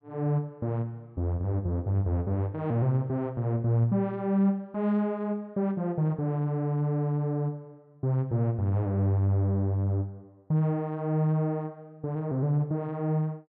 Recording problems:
none

